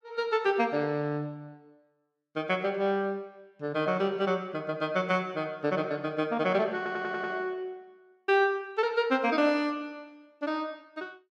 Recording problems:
audio stuttering; at 7 s

